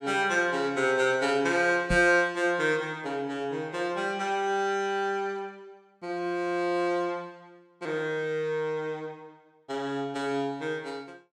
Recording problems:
microphone bump; at 2 s; peak 0 dB vs average level

